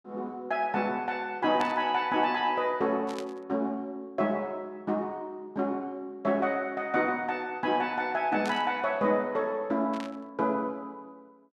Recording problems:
burst of static; 4 times, first at 1.5 s; peak -6 dB vs average level

